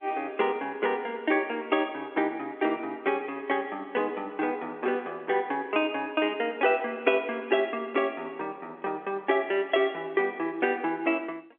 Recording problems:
telephone audio; 280 Hz to 3.5 kHz, G.711

